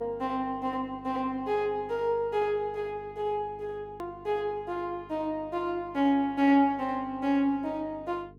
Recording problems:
electrical hum; 50 Hz, harmonics up to 450 Hz, SNR 23 dB
hard cut with a click; at 4 s

